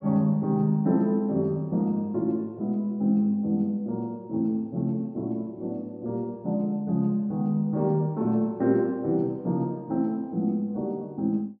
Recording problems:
none

